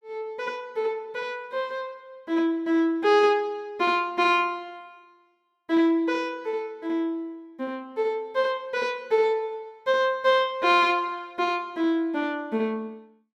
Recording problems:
none

